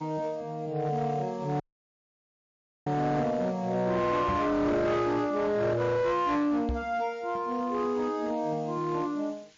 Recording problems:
lossy compression; MP3, log-spectral distance 3 dB, nothing above 6.3 kHz
distorted audio; hard clipping, signal-to-distortion ratio 12 dB
background hiss; SNR 30 dB
audio cutting out; at 1.5 s for 1.5 s
microphone thump; at 4.5 s and at 6.5 s; peak 0 dB vs average level

